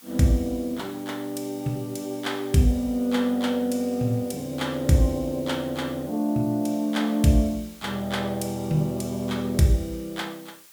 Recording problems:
hiss; slope +2 dB per octave, SNR 22 dB

